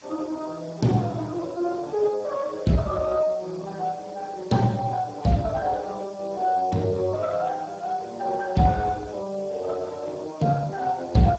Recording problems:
lossy compression; Speex, log-spectral distance 4 dB, nothing above 7.6 kHz
background hiss; slope -1 dB per octave, SNR 25 dB

